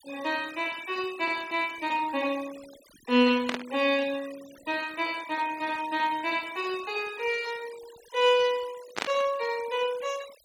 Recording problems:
noise reduction artefacts; signal-to-artefact ratio 19 dB
static burst; at 3.5 s and at 9 s; peak +2 dB vs average level

